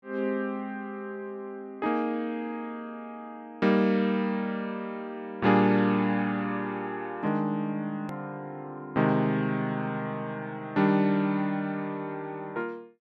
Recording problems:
click at an edit; at 8 s

